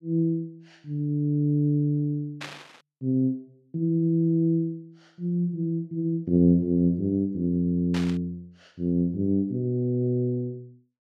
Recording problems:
burst of static; at 2.5 s and at 8 s; peak -6 dB vs average level

